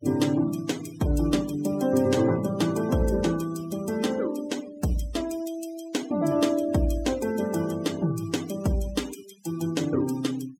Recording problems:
noise reduction artefacts; signal-to-artefact ratio 16 dB

